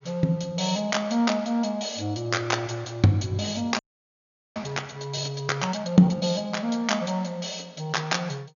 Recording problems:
low-pass filter; nothing above 7 kHz
audio freezing; at 4 s for 1 s

